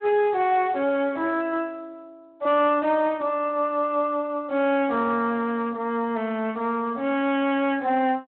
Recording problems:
telephone audio; 280 Hz to 3.5 kHz, Speex
distorted audio; hard clipping, uneven, signal-to-distortion ratio 13 dB

